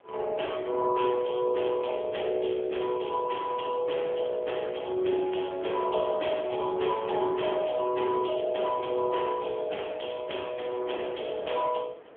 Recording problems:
telephone audio; 260 Hz to 3.4 kHz, AMR-NB
wind on the microphone; below 980 Hz, SNR 21 dB

